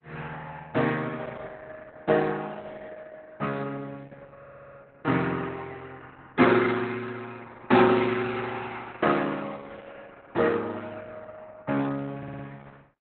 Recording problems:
lossy compression; Opus, log-spectral distance 4 dB, nothing above 4 kHz
stutter; at 4.5 s and at 12 s

